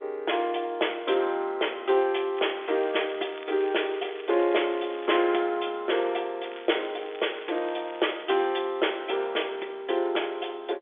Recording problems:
phone line; 300 Hz to 3.5 kHz, G.711
crackling; from 2.5 to 5 s and from 6.5 to 8 s; loose cable, SNR 19 dB

